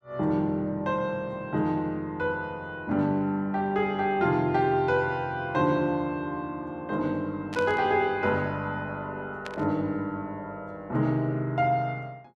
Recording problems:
static burst; at 7.5 s and at 9.5 s; peak -6 dB vs average level

